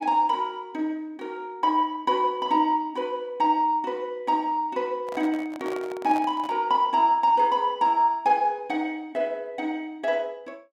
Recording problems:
microphone handling noise; from 5 to 6.5 s; peak -8 dB vs average level

